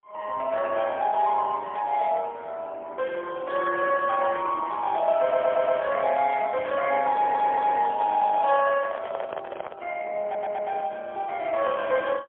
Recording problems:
phone line; 320 Hz to 2.6 kHz, AMR-NB, then MP3
stutter; at 5 s, at 7 s and at 10 s
handling noise; from 8 to 10 s; peak -6 dB vs average level

